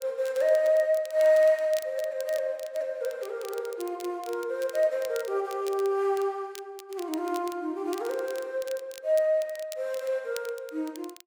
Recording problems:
crackle; vinyl, SNR 20 dB

